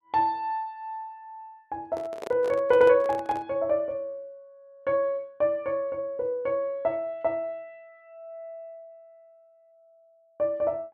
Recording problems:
microphone handling noise; from 2 to 3.5 s; peak -6 dB vs average level

